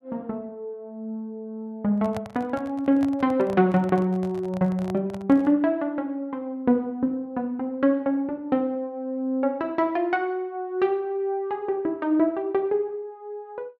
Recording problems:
microphone handling noise; from 2 to 5.5 s; peak -5 dB vs average level

